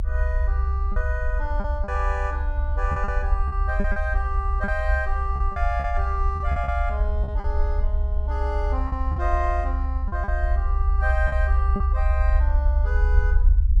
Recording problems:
low-frequency rumble; below 66 Hz, SNR -5 dB
lost packets; 7% of the sound replaced, filled with repeated pitch periods

